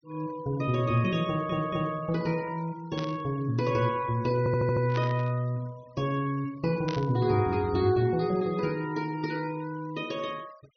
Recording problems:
treble missing; nothing above 6.1 kHz
noise reduction artefacts; signal-to-artefact ratio 25 dB
audio stuttering; at 1.5 s and at 4.5 s
burst of static; at 3 s, at 5 s and at 7 s; peak -6 dB vs average level

